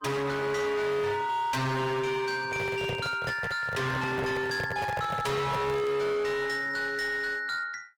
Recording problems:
lossy compression; Opus, log-spectral distance 3 dB, nothing above 18.3 kHz
distorted audio; hard clipping, signal-to-distortion ratio 7 dB
microphone handling noise; from 2.5 to 6 s; peak -1 dB vs average level

